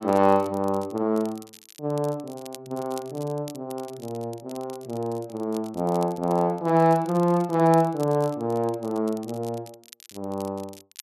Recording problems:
crackle; vinyl, SNR 22 dB

